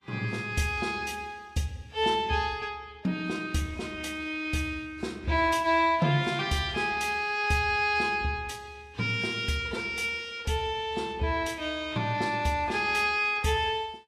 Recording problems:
lossy codec; Vorbis, log-spectral distance 3 dB, nothing above 12.7 kHz

